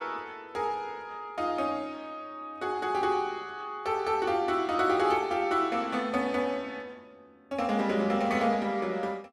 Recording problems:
none

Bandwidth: 14 kHz